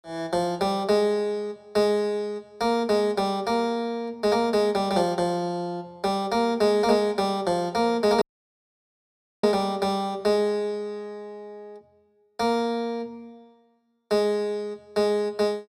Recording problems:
audio cutting out; at 8 s for 1 s

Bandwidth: 15 kHz